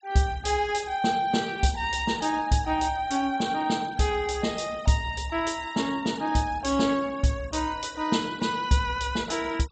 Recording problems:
low-pass filter; nothing above 8 kHz
denoising artefacts; signal-to-artefact ratio 21 dB

